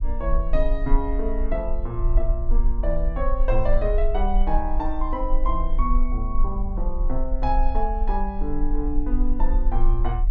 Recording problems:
low-frequency rumble; below 38 Hz, strongest tone 22 Hz, SNR -2 dB

